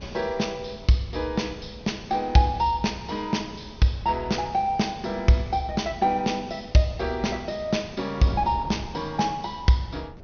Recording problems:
treble cut off; nothing above 6.4 kHz
wind on the microphone; below 320 Hz, SNR 19 dB

